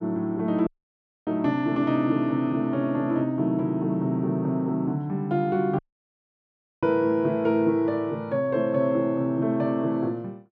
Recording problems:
dropout; at 0.5 s for 0.5 s and at 6 s for 1 s

